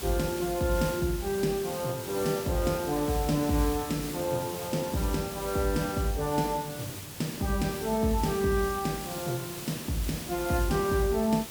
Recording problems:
hiss; slope -2 dB per octave, SNR 9 dB

